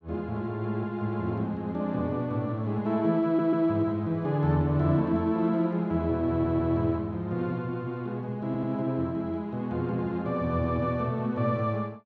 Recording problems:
audio stuttering; at 3.5 s, at 6.5 s and at 8.5 s

